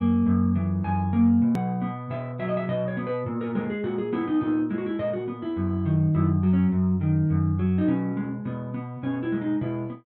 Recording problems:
click at an edit; at 1.5 s

